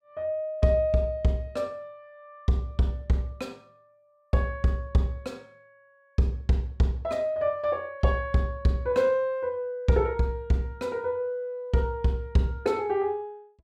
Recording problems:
none

